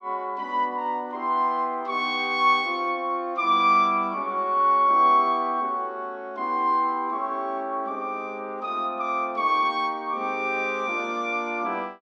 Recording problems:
none

